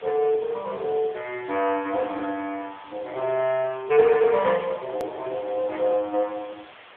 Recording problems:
telephone audio; 220 Hz to 3.3 kHz, AMR-NB
hiss; SNR 22 dB
edit click; at 5 s

